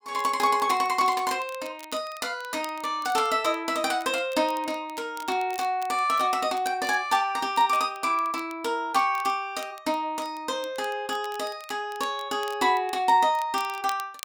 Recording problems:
crackling; vinyl, SNR 21 dB

